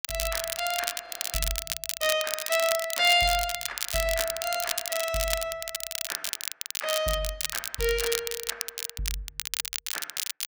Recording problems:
crackling; vinyl, SNR 3 dB
frozen audio; at 1 s

